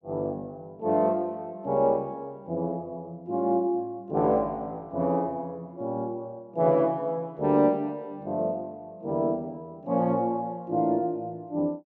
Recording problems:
none

